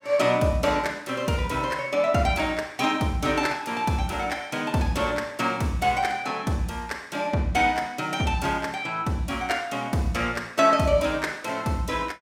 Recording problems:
none

